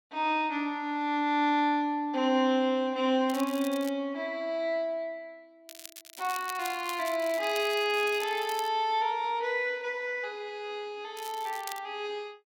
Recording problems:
crackling; at 3.5 s, from 5.5 to 8.5 s and at 11 s; loose cable, SNR 15 dB

